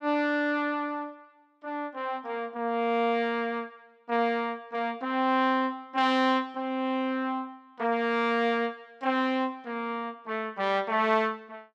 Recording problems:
none

